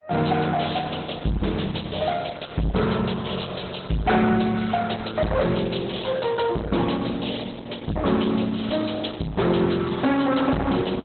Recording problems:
codec artefacts; Opus, log-spectral distance 10 dB, nothing above 4 kHz
distortion; soft clipping, signal-to-distortion ratio 6 dB

